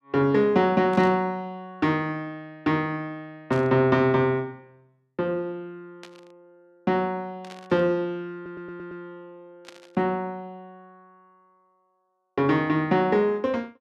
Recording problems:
burst of static; 5 times, first at 1 s; peak -15 dB vs average level
audio stuttering; at 8.5 s

